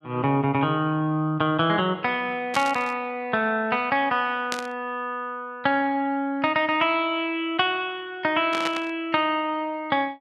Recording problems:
static burst; at 2.5 s, at 4.5 s and at 8.5 s; peak 0 dB vs average level

